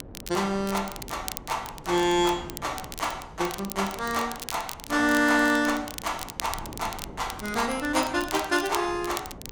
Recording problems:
wind noise; below 380 Hz, SNR 18 dB
crackling; vinyl, SNR 12 dB

